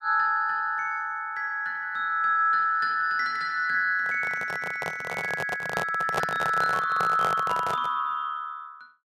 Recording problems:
microphone handling noise; from 4 to 8 s; peak +2 dB vs average level

